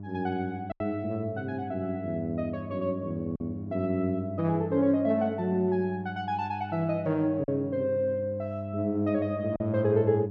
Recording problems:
hum; 50 Hz, harmonics up to 700 Hz, SNR 10 dB
packet loss; 1.9% of the sound replaced, filled with silence

